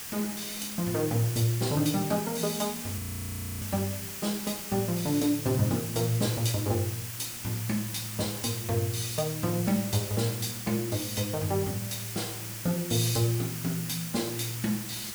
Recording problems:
background hiss; slope +1 dB per octave, SNR 6 dB
audio freezing; at 3 s for 0.5 s

